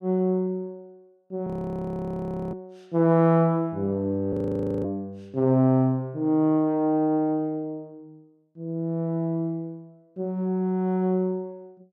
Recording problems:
frozen audio; at 1.5 s for 1 s and at 4.5 s for 0.5 s

